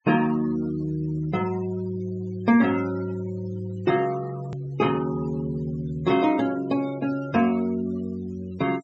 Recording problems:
low-pass filter; nothing above 8 kHz
denoising artefacts; signal-to-artefact ratio 18 dB
hard cut with a click; at 4.5 s

